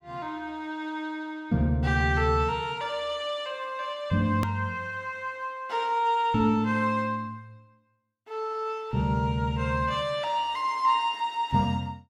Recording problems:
edit click; at 4.5 s

